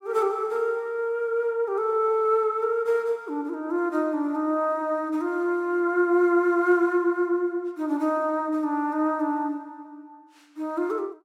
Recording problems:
none

